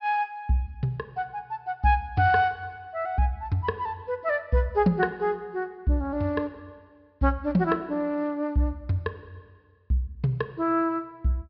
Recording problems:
treble missing; nothing above 5.5 kHz

